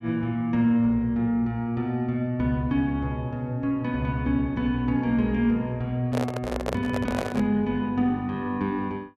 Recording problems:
handling noise; from 6 to 7.5 s; peak 0 dB vs average level

